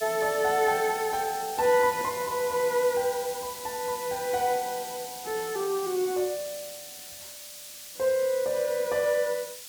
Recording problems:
hiss; slope +3 dB per octave, SNR 11 dB

